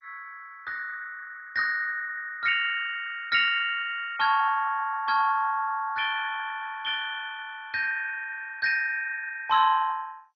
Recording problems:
codec artefacts; MP2, log-spectral distance 4 dB, nothing above 5.2 kHz

